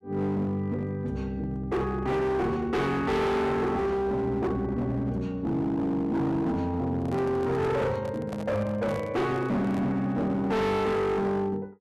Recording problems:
distortion; hard clipping, signal-to-distortion ratio 7 dB
handling noise; from 7 to 10 s; peak -6 dB vs average level

